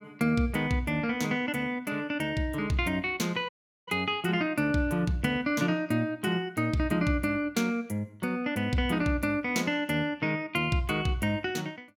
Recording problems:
dropout; at 3.5 s

